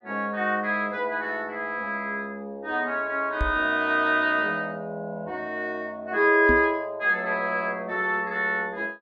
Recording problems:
microphone thump; at 3.5 s and at 6.5 s; peak +1 dB vs average level

